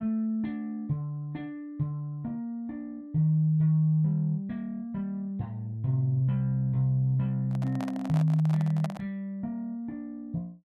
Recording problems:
handling noise; from 7.5 to 9 s; peak -4 dB vs average level

